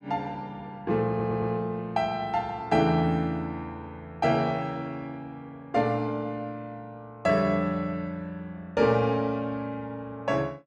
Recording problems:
audio stuttering; at 1 s

